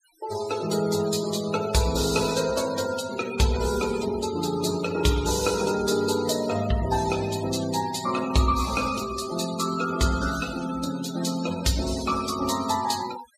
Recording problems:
noise reduction artefacts; signal-to-artefact ratio 12 dB

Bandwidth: 14.5 kHz